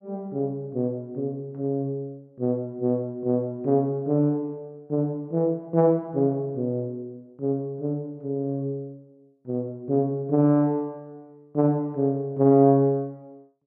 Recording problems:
none

